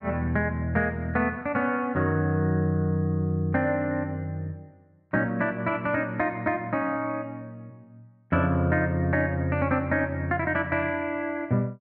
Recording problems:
none

